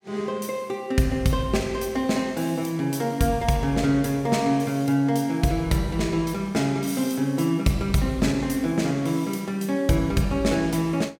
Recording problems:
none

